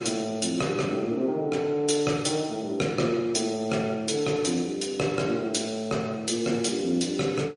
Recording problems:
lossy compression; MP3, log-spectral distance 3 dB, nothing above 10.4 kHz

